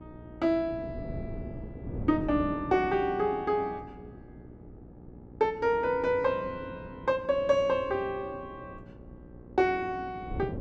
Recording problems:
hum; 60 Hz, harmonics up to 960 Hz, SNR 21 dB
wind noise; below 300 Hz, SNR 15 dB

